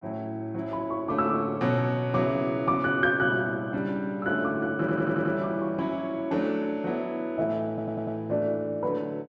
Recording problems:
audio stuttering; at 5 s and at 7.5 s

